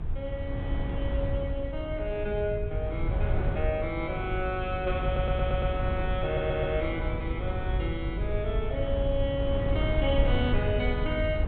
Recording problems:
treble cut off; nothing above 4 kHz
electrical hum; 50 Hz, harmonics up to 500 Hz, SNR 8 dB
rumble; below 98 Hz, SNR 7 dB
wind noise; below 110 Hz, SNR 2 dB
audio stuttering; at 5 s and at 6 s

